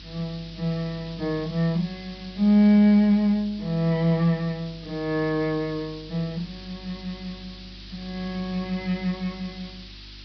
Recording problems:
low-pass filter; nothing above 5.5 kHz
hum; 50 Hz, harmonics up to 350 Hz, SNR 23 dB
background hiss; SNR 19 dB

